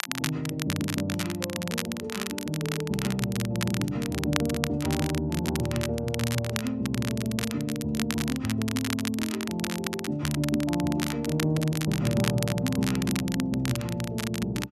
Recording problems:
crackling; vinyl, SNR 6 dB

